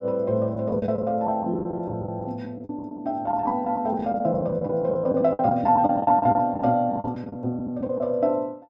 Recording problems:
lost packets; 15% of the sound replaced, filled with the last packet

